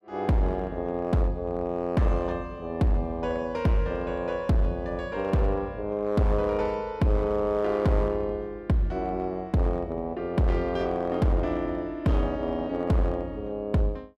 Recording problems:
distorted audio; hard clipping, uneven, signal-to-distortion ratio 11 dB

